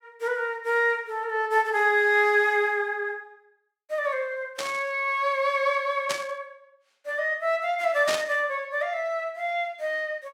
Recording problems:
burst of static; at 4.5 s, at 6 s and at 8 s; peak 0 dB vs average level

